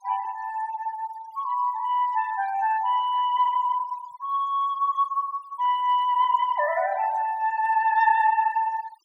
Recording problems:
noise reduction artefacts; signal-to-artefact ratio 23 dB

